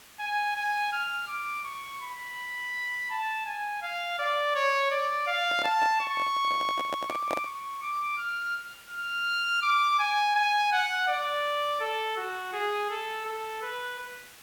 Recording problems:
hiss; slope 0 dB per octave, SNR 21 dB
handling noise; from 5.5 to 7.5 s; peak 0 dB vs average level

